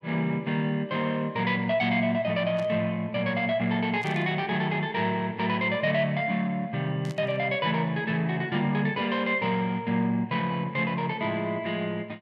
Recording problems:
static burst; at 2.5 s, at 4 s and at 7 s; peak -14 dB vs average level

